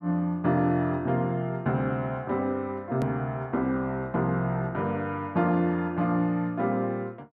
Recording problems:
click at an edit; at 3 s

